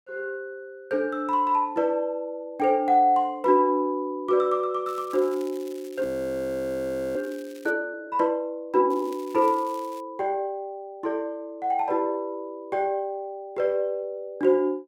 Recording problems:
crackling; from 5 to 7.5 s and from 9 to 10 s; loose cable, SNR 24 dB
audio freezing; at 6 s for 1 s

